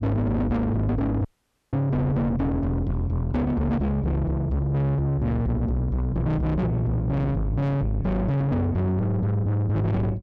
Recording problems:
distortion; soft clipping, signal-to-distortion ratio 7 dB
audio cutting out; at 1.5 s

